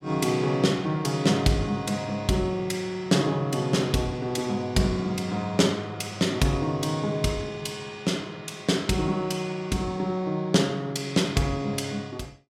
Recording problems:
none

